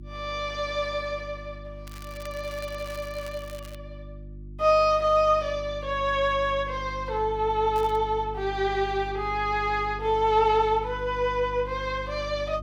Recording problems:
electrical hum; 50 Hz, harmonics up to 350 Hz, SNR 15 dB
crackle; from 2 to 4 s and at 8 s; loose cable, SNR 22 dB

